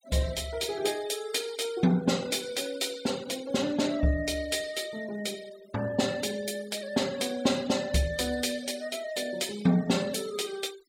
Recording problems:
denoising artefacts; signal-to-artefact ratio 17 dB

